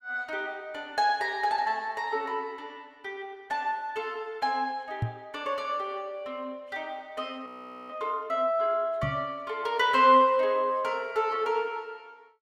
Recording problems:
knock on the microphone; at 5 s and at 9 s; peak +3 dB vs average level
frozen audio; at 7.5 s

